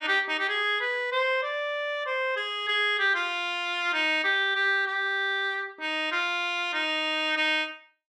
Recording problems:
none

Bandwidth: 13 kHz